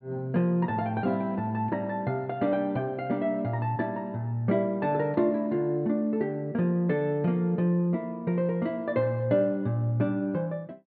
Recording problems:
treble cut off; nothing above 4.5 kHz

